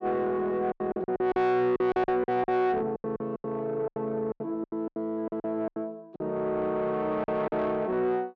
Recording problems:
distortion; soft clipping, signal-to-distortion ratio 10 dB
packet loss; 15% of the sound replaced, filled with silence

